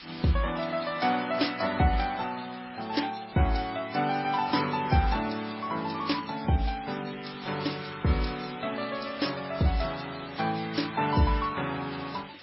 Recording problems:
lossy compression; MP3, then AAC, log-spectral distance 15 dB, nothing above 5.5 kHz
background hiss; SNR 18 dB

